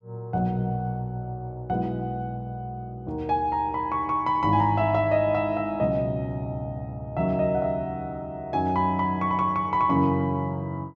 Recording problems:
none

